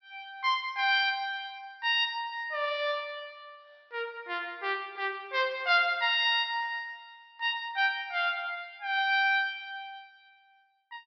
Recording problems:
low-pass filter; nothing above 5.5 kHz

